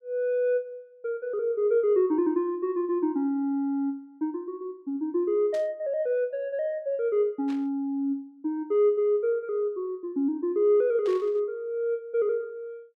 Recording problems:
burst of static; at 5.5 s, at 7.5 s and at 11 s; peak -15 dB vs average level

